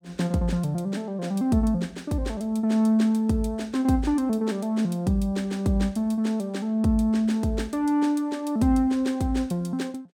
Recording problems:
none

